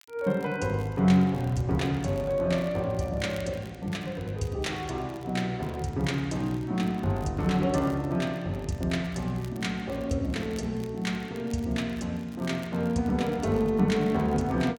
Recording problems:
crackle; vinyl, SNR 27 dB

